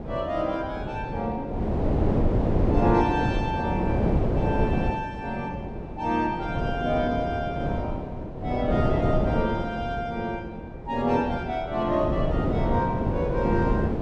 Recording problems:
wind noise; below 410 Hz, SNR -1 dB

